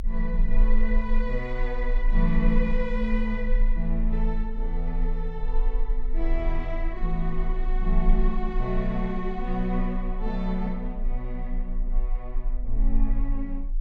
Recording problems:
low-frequency rumble; below 30 Hz, strongest tone 28 Hz, SNR -1 dB

